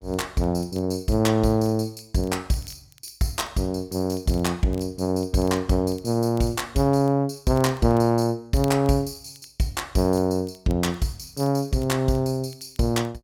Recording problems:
crackling; vinyl, SNR 29 dB

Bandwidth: 17 kHz